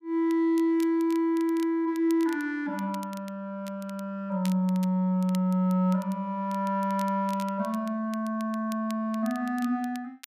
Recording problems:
crackle; vinyl, SNR 22 dB

